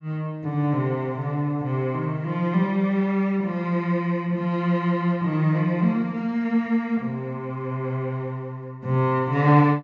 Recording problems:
low-pass filter; nothing above 8 kHz

